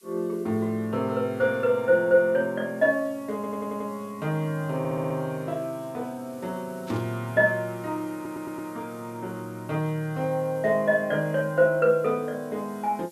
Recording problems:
hiss; slope +5 dB per octave, SNR 27 dB
audio stuttering; at 3.5 s, at 5 s and at 8 s
burst of static; at 7 s; peak -13 dB vs average level

